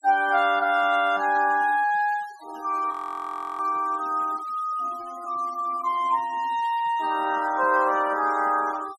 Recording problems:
denoising artefacts; signal-to-artefact ratio 22 dB
frozen audio; at 3 s for 0.5 s

